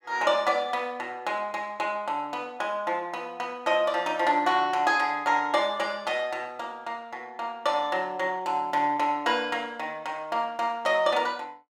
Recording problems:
none

